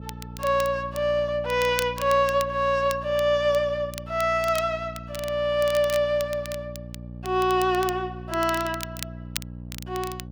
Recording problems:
hum; 60 Hz, harmonics up to 600 Hz, SNR 15 dB
crackling; vinyl, SNR 15 dB

